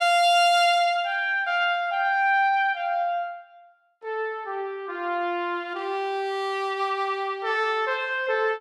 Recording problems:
none

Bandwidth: 14.5 kHz